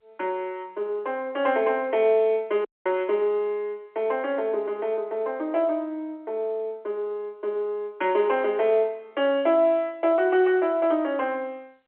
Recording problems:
phone line; 300 Hz to 3.3 kHz, G.711
audio cutting out; at 2.5 s

